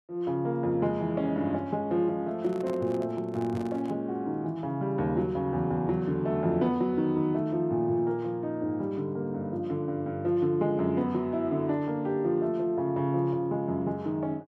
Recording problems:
microphone handling noise; from 2.5 to 4 s; peak -11 dB vs average level

